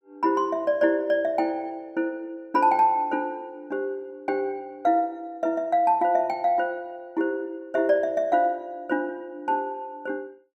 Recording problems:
none

